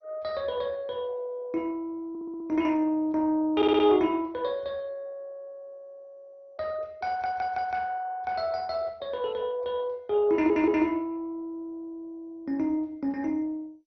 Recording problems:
lossy codec; MP2, log-spectral distance 2 dB, nothing above 4.9 kHz
audio stuttering; 4 times, first at 2 s

